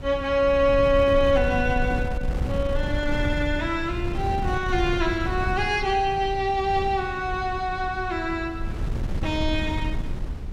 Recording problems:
wind on the microphone; below 120 Hz, SNR 7 dB

